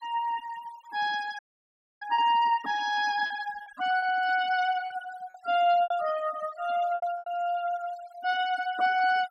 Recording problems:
denoising artefacts; signal-to-artefact ratio 17 dB
lost packets; 6% of the sound replaced, filled with repeated pitch periods
dropout; at 1.5 s for 0.5 s

